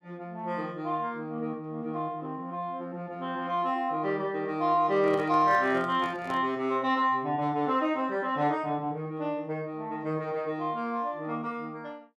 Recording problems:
handling noise; from 5 to 6.5 s; peak -7 dB vs average level

